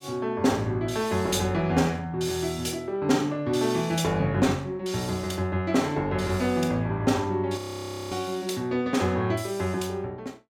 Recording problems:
audio freezing; at 7.5 s for 0.5 s

